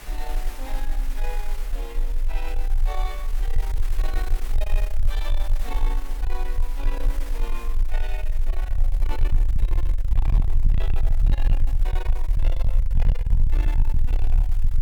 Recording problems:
distortion; soft clipping, signal-to-distortion ratio 7 dB
background hiss; slope -2 dB per octave, SNR 6 dB
rumble; below 36 Hz, strongest tone 20 Hz, SNR -12 dB

